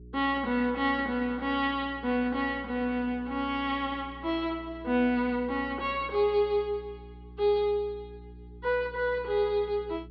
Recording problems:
treble cut off; nothing above 5.5 kHz
electrical hum; 60 Hz, harmonics up to 420 Hz, SNR 19 dB

